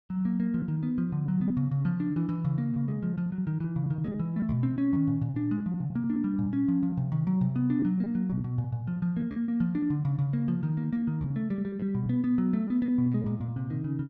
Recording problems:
lost packets; 10% of the sound replaced, filled with repeated pitch periods

